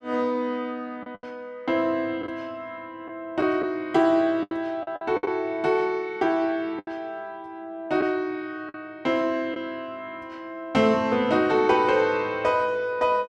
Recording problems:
lost packets; 4% of the sound replaced, filled with the last packet

